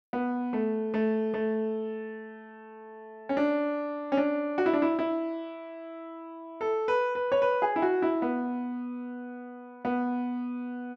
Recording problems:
none

